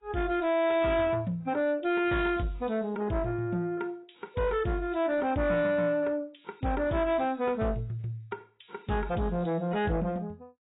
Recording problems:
lossy codec; AAC, log-spectral distance 3 dB, nothing above 3.8 kHz
distorted audio; soft clipping, signal-to-distortion ratio 12 dB

